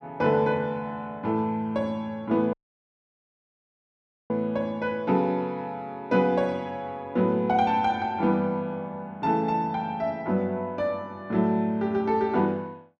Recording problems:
dropout; at 2.5 s for 2 s

